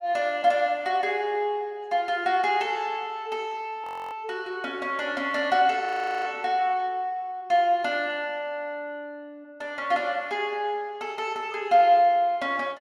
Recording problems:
audio freezing; at 4 s and at 6 s

